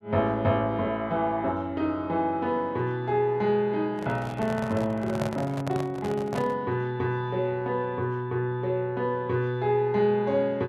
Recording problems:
microphone handling noise; from 4 to 6.5 s; peak 0 dB vs average level

